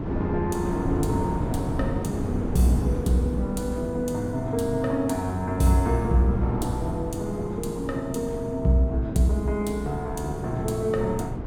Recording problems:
wind on the microphone; below 330 Hz, SNR 6 dB

